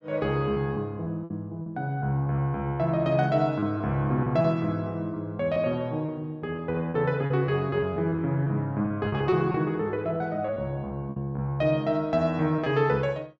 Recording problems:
lost packets; 7% of the sound replaced, filled with repeated pitch periods

